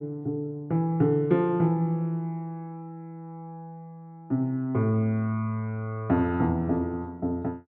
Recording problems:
none

